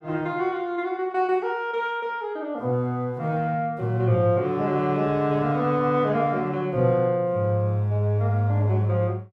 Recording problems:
none

